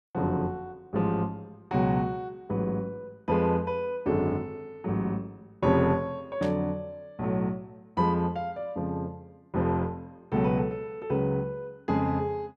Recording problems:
static burst; at 6.5 s; peak -10 dB vs average level

